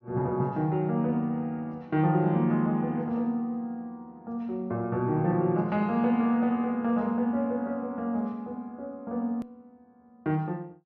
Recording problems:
treble missing; nothing above 6.4 kHz
click at an edit; at 9.5 s

